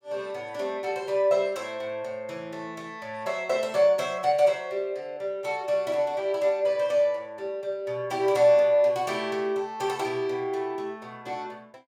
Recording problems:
none

